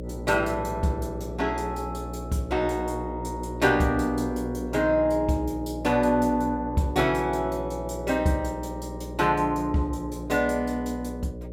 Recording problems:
hum; 60 Hz, harmonics up to 600 Hz, SNR 10 dB

